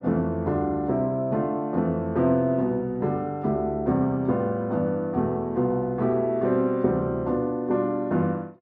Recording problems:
none

